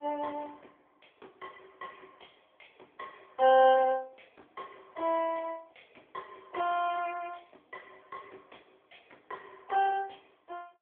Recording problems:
telephone audio; 340 Hz to 3.4 kHz, AMR-NB

